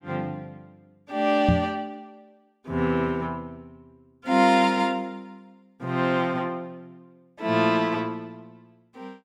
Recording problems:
knock on the microphone; at 1.5 s; peak +6 dB vs average level

